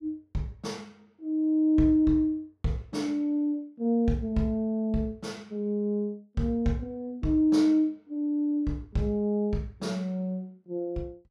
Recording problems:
none

